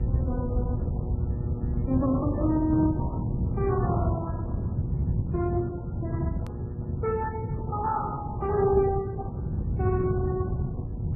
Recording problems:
codec artefacts; Opus, then MP3, log-spectral distance 2 dB, nothing above 2.4 kHz
hum; 60 Hz, harmonics up to 1.3 kHz, SNR 13 dB
rumble; below 130 Hz, SNR -2 dB
hard cut with a click; at 6.5 s

